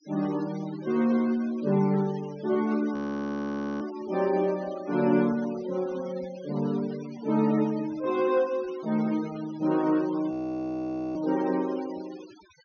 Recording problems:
treble cut off; nothing above 6.4 kHz
denoising artefacts; signal-to-artefact ratio 20 dB
frozen audio; at 3 s for 1 s and at 10 s for 1 s

